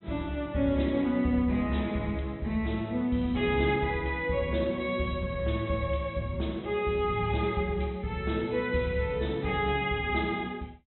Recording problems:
treble cut off; nothing above 4 kHz

